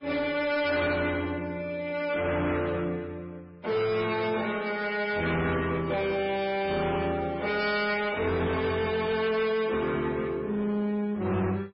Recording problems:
lossy codec; MP3, then Vorbis, log-spectral distance 3 dB, nothing above 5.2 kHz
distorted audio; soft clipping, signal-to-distortion ratio 11 dB

